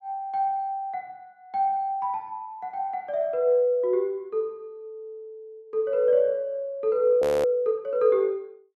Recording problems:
frozen audio; at 7 s

